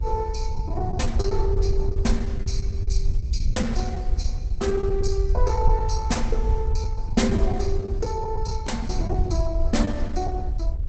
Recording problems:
lossy compression; Opus, log-spectral distance 2 dB, nothing above 8 kHz
electrical hum; 60 Hz, harmonics up to 600 Hz, SNR 23 dB
low-frequency rumble; below 66 Hz, SNR -1 dB
wind noise; below 140 Hz, SNR 11 dB
packet loss; 8% of the sound replaced, filled with the last packet

